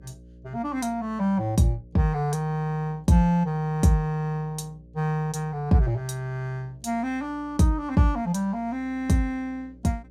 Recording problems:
hum; 60 Hz, harmonics up to 600 Hz, SNR 25 dB

